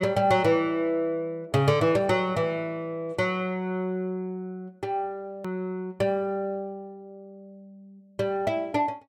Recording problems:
hard cut with a click; at 5.5 s

